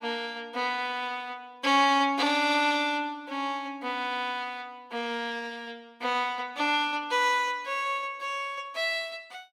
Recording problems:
none

